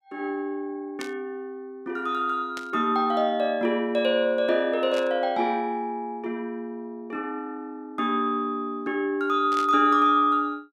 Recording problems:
static burst; 4 times, first at 1 s; peak -7 dB vs average level

